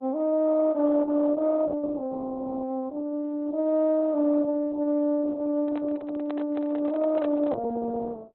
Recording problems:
codec artefacts; Opus, log-spectral distance 2 dB
microphone handling noise; from 5.5 to 7.5 s; peak -9 dB vs average level

